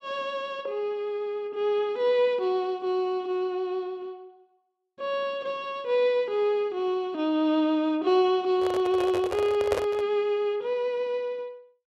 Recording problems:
handling noise; from 8.5 to 10 s; peak +2 dB vs average level

